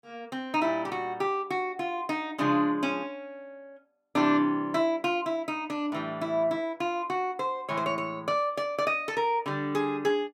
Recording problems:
none

